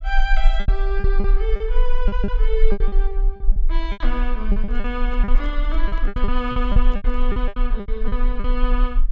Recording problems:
low-pass filter; nothing above 8 kHz
rumble; below 36 Hz, strongest tone 20 Hz, SNR -5 dB
lost packets; 15% of the sound replaced, filled with repeated pitch periods
microphone handling noise; from 4.5 to 7.5 s; peak -9 dB vs average level

